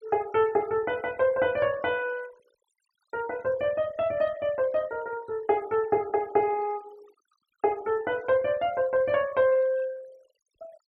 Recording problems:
noise reduction artefacts; signal-to-artefact ratio 24 dB

